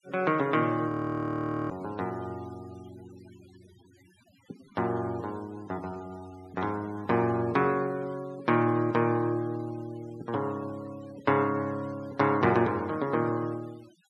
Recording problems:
noise reduction artefacts; signal-to-artefact ratio 24 dB
frozen audio; at 1 s for 1 s

